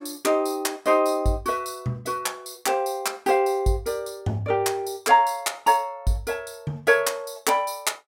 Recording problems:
none

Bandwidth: 16 kHz